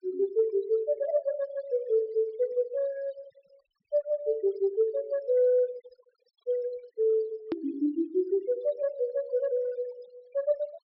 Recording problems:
treble missing; nothing above 5.5 kHz
denoising artefacts; signal-to-artefact ratio 26 dB
edit click; at 7.5 s

